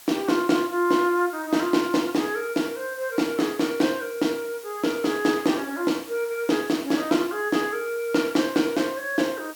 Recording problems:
background hiss; SNR 19 dB

